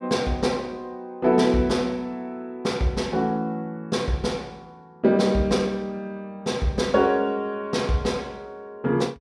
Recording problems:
none

